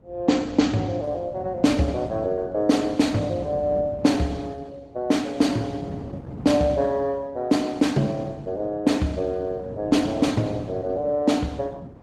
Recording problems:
codec artefacts; Opus, log-spectral distance 3 dB, nothing above 18.9 kHz
wind noise; below 270 Hz, SNR 14 dB

